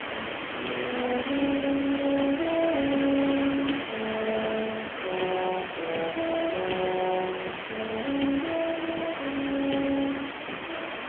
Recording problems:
telephone audio; 190 Hz to 3.2 kHz, AMR-NB
hiss; SNR 4 dB

